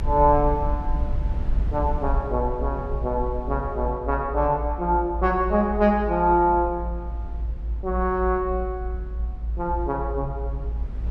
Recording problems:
low-frequency rumble; below 58 Hz, strongest tone 54 Hz, SNR 6 dB

